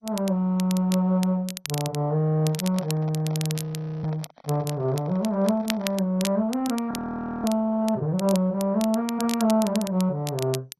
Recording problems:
codec artefacts; MP2, log-spectral distance 2 dB
crackle; vinyl, SNR 12 dB
microphone handling noise; from 2.5 to 6 s; peak -12 dB vs average level
audio freezing; at 3.5 s and at 7 s for 0.5 s

